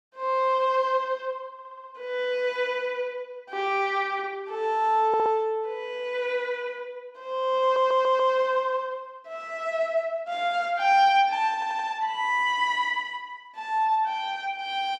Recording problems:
stutter; 4 times, first at 1.5 s

